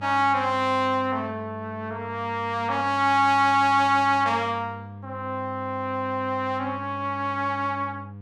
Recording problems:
mains hum; 50 Hz, harmonics up to 700 Hz, SNR 16 dB

